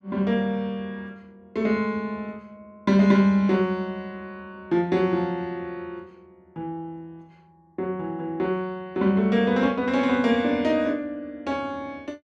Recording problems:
none

